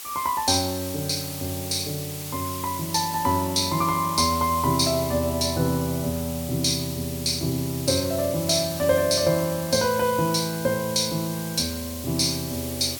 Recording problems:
hiss; slope +3 dB per octave, SNR 10 dB

